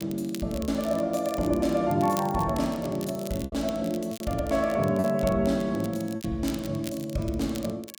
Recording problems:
crackle; vinyl, SNR 17 dB
packet loss; 4% of the sound replaced, filled with repeated pitch periods

